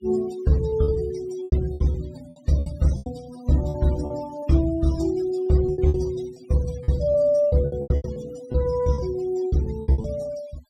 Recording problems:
noise reduction artefacts; signal-to-artefact ratio 21 dB
lost packets; 13% of the sound replaced, filled with repeated pitch periods

